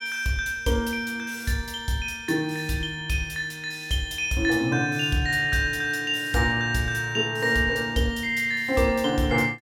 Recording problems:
none

